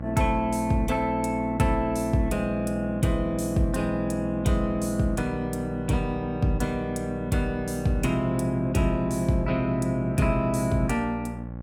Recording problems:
electrical hum; 60 Hz, harmonics up to 1.1 kHz, SNR 10 dB

